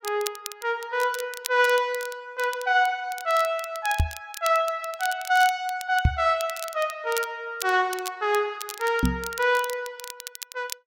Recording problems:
crackling; vinyl, SNR 13 dB
microphone thump; at 4 s, at 6 s and at 9 s; peak +8 dB vs average level

